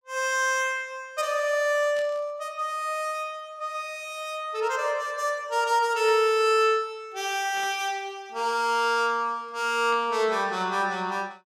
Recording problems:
burst of static; 4 times, first at 2 s; peak -13 dB vs average level

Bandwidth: 16.5 kHz